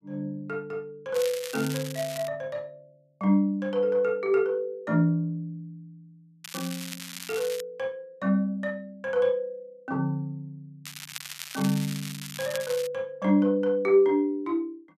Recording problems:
crackle; from 1 to 2.5 s, from 6.5 to 7.5 s and from 11 to 13 s; loose cable, SNR 11 dB

